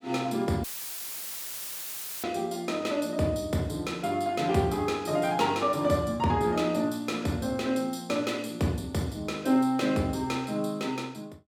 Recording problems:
audio cutting out; at 0.5 s for 1.5 s; filled with static

